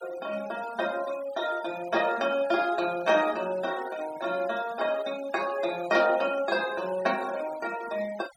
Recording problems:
noise reduction artefacts; signal-to-artefact ratio 18 dB

